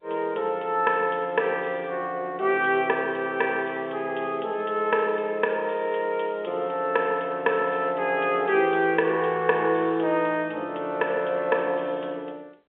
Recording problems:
telephone audio; 260 Hz to 3.4 kHz, G.711

